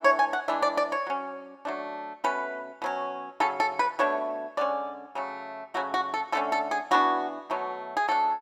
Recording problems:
none

